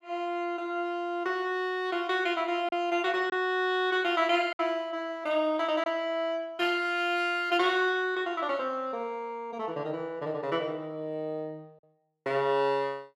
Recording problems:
lost packets; 1% of the sound replaced, filled with silence

